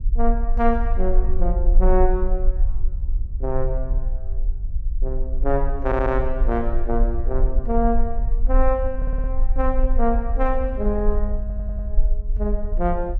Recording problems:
low-frequency rumble; below 42 Hz, strongest tone 18 Hz, SNR 0 dB
stutter; at 6 s, at 9 s and at 11 s

